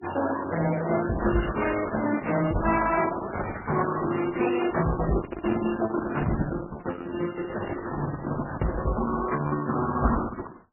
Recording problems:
codec artefacts; Opus, then MP3, log-spectral distance 5 dB, nothing above 2.8 kHz

